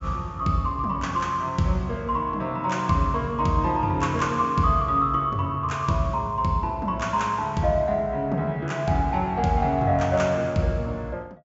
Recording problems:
low-pass filter; nothing above 8 kHz

